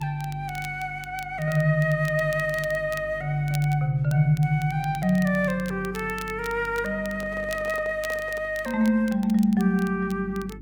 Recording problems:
hum; 50 Hz, harmonics up to 400 Hz, SNR 20 dB
crackle; vinyl, SNR 20 dB
microphone handling noise; from 7 to 8.5 s; peak -12 dB vs average level

